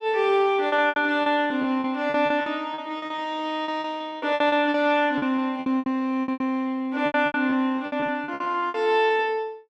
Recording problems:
lost packets; 18% of the sound replaced, filled with repeated pitch periods

